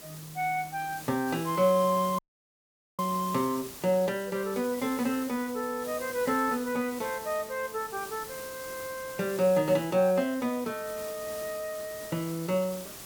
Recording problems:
background hiss; slope -2 dB per octave, SNR 13 dB
dropout; at 2 s for 1 s

